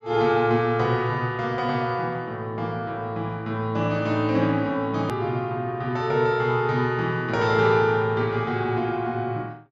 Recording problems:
treble missing; nothing above 8 kHz
edit click; at 5 s

